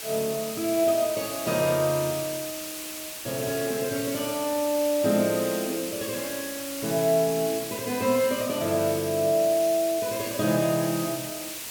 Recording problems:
background hiss; slope +1 dB per octave, SNR 8 dB

